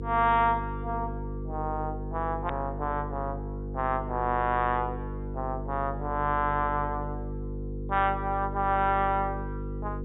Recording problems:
low-pass filter; nothing above 4 kHz
electrical hum; 50 Hz, harmonics up to 500 Hz, SNR 7 dB
edit click; at 2.5 s

